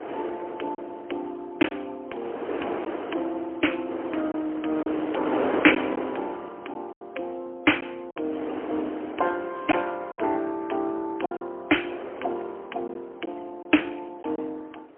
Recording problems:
telephone audio; 240 Hz to 3.3 kHz, AMR-NB, then MP3
wind noise; below 830 Hz, SNR 5 dB
packet loss; 4% of the sound replaced, filled with silence

